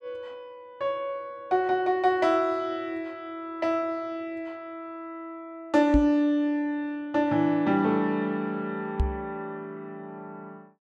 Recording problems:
knock on the microphone; at 6 s and at 9 s; peak +5 dB vs average level

